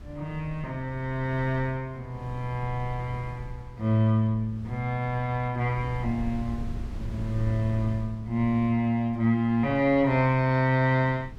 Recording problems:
wind noise; below 110 Hz, SNR 15 dB

